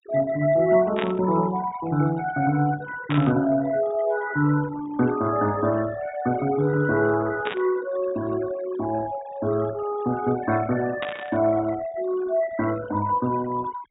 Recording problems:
low-pass filter; nothing above 4 kHz
noise reduction artefacts; signal-to-artefact ratio 16 dB
burst of static; 4 times, first at 1 s; peak -2 dB vs average level

